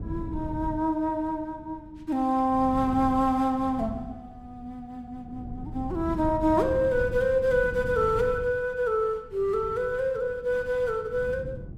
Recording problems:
wind on the microphone; below 180 Hz, SNR 13 dB

